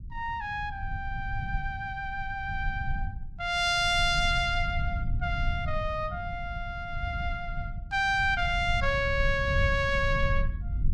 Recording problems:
low-frequency rumble; below 94 Hz, SNR 6 dB

